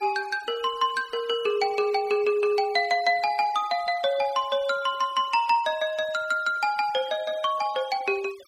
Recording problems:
denoising artefacts; signal-to-artefact ratio 22 dB

